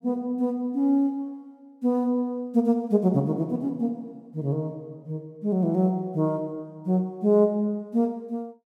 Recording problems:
none

